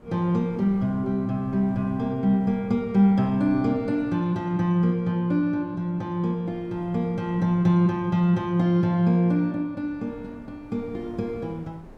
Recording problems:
wind on the microphone; below 470 Hz, SNR 25 dB

